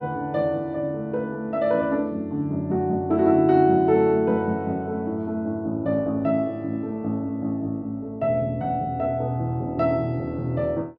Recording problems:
none

